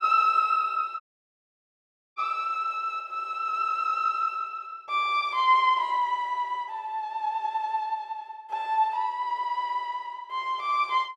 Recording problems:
dropout; at 1 s for 1 s

